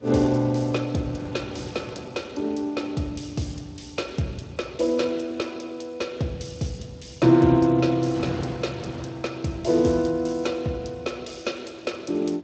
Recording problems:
lossy compression; Speex, log-spectral distance 6 dB, nothing above 7.8 kHz
wind on the microphone; below 580 Hz, SNR 15 dB

